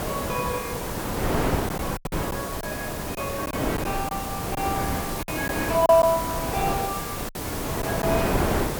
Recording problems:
background hiss; slope +1 dB per octave, SNR 7 dB
wind on the microphone; below 890 Hz, SNR 2 dB
lost packets; 5% of the sound replaced, filled with silence

